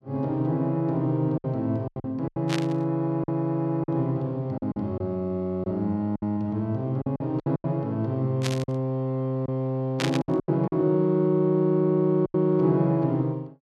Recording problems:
lost packets; 8% of the sound replaced, filled with silence
burst of static; at 2.5 s, at 8.5 s and at 10 s; peak +1 dB vs average level

